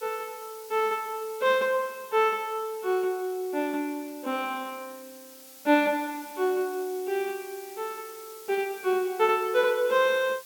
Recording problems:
background hiss; slope +1 dB per octave, SNR 19 dB

